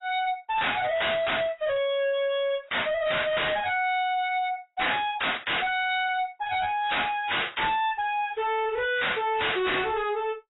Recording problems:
lossy codec; AAC, log-spectral distance 7 dB, nothing above 3.8 kHz
distortion; hard clipping, signal-to-distortion ratio 5 dB

